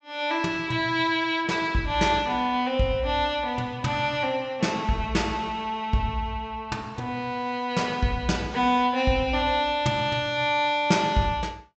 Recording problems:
low-pass filter; nothing above 8 kHz

